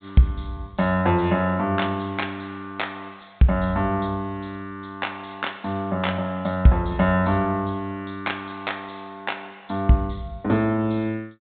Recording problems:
treble cut off; nothing above 4 kHz

